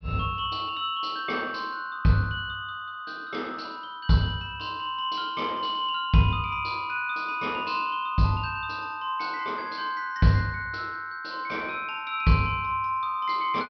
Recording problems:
low-pass filter; nothing above 5.5 kHz

